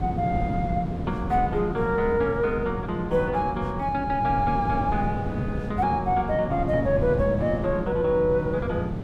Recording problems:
wind on the microphone; below 250 Hz, SNR 6 dB

